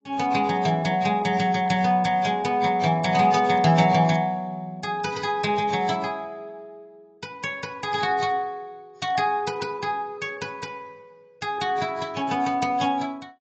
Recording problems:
lossy codec; AAC, log-spectral distance 2 dB, nothing above 7.3 kHz

